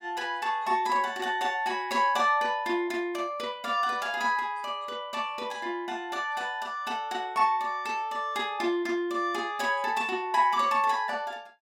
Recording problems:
none

